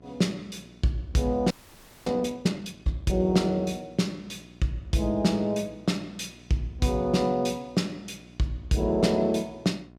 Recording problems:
hum; 60 Hz, harmonics up to 1.1 kHz, SNR 25 dB
frozen audio; at 1.5 s for 0.5 s

